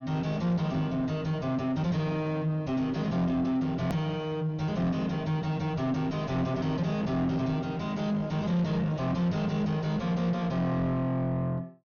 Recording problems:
low-pass filter; nothing above 6.5 kHz
distortion; soft clipping, signal-to-distortion ratio 5 dB
hard cut with a click; at 4 s

